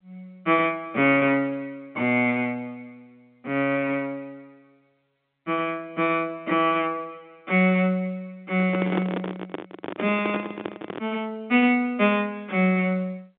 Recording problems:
telephone audio; 190 Hz to 3.7 kHz, G.711
microphone handling noise; from 8.5 to 11 s; peak +1 dB vs average level

